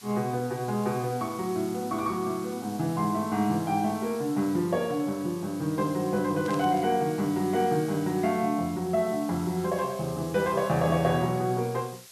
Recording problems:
hiss; slope +3 dB per octave, SNR 18 dB
burst of static; at 6.5 s; peak -12 dB vs average level

